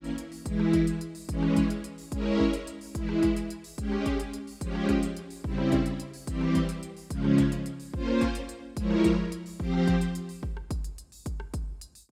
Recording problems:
none

